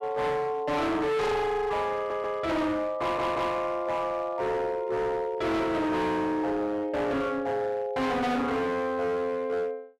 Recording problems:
distorted audio; hard clipping, signal-to-distortion ratio 7 dB
audio stuttering; at 2 s and at 3 s

